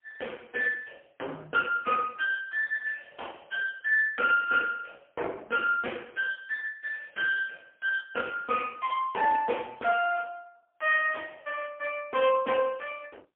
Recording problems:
telephone audio; 370 Hz to 2.8 kHz, AMR-NB, then MP3

